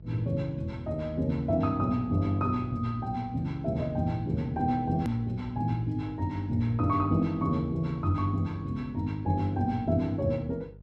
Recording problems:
electrical hum; 50 Hz, harmonics up to 450 Hz, SNR 19 dB
click at an edit; at 5 s

